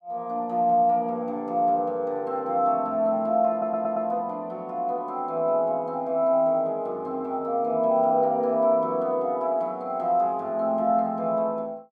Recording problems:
audio stuttering; at 3.5 s

